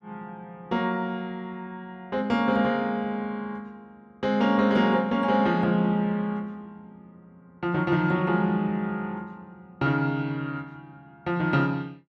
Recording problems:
none

